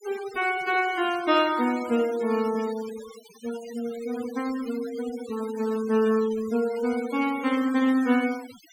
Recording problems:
noise reduction artefacts; signal-to-artefact ratio 17 dB

